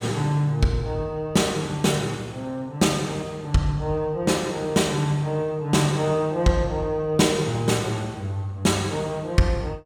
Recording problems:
none

